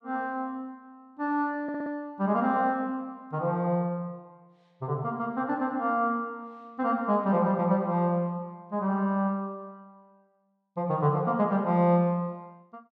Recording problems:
audio stuttering; at 1.5 s

